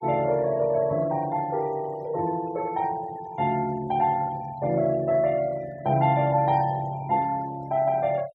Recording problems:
denoising artefacts; signal-to-artefact ratio 22 dB

